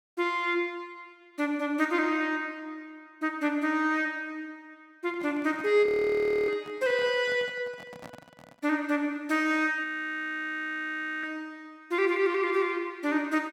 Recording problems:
microphone handling noise; from 5 to 8.5 s; peak -11 dB vs average level
frozen audio; at 6 s for 0.5 s and at 10 s for 1.5 s

